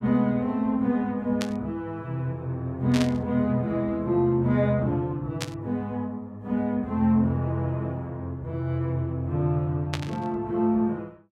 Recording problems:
burst of static; 4 times, first at 1.5 s; peak 0 dB vs average level

